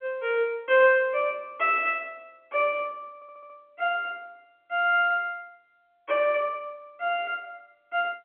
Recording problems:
telephone audio; 240 Hz to 3.4 kHz, G.711
stutter; at 3 s

